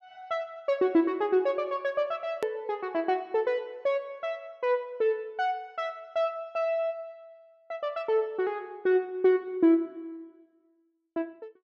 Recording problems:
edit click; at 2.5 s

